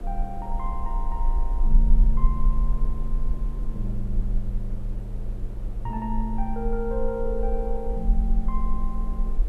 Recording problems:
hiss; slope -9 dB per octave, SNR 13 dB
low-frequency rumble; below 38 Hz, strongest tone 24 Hz, SNR -4 dB

